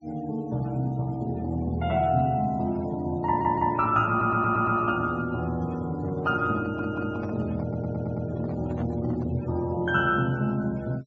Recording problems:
treble cut off; nothing above 8 kHz
noise reduction artefacts; signal-to-artefact ratio 26 dB
stutter; 4 times, first at 3.5 s
handling noise; from 6 to 9.5 s; peak -10 dB vs average level

